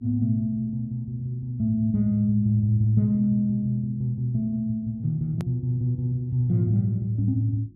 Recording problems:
mains hum; 50 Hz, harmonics up to 350 Hz, SNR 30 dB
edit click; at 5.5 s

